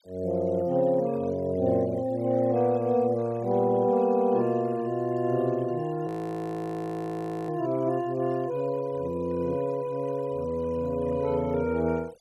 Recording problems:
denoising artefacts; signal-to-artefact ratio 25 dB
frozen audio; at 6 s for 1.5 s

